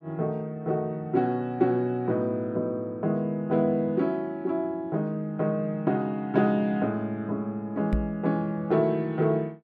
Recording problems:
knock on the microphone; at 8 s; peak +4 dB vs average level

